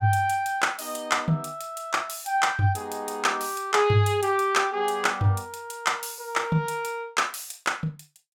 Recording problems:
none

